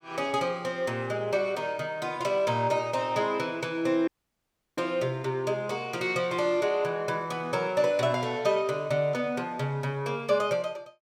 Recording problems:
audio cutting out; at 4 s for 0.5 s

